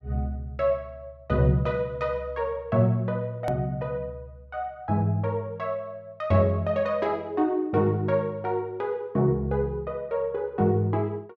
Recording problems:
click at an edit; at 3.5 s

